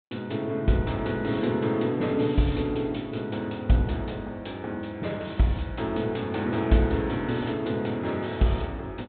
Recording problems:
treble cut off; nothing above 4 kHz

